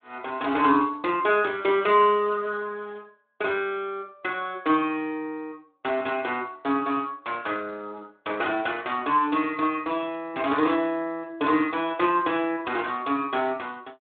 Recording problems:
phone line; 240 Hz to 3.6 kHz, Speex

